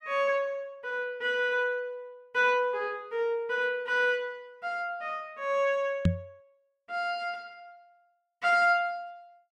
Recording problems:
microphone thump; at 6 s; peak +8 dB vs average level

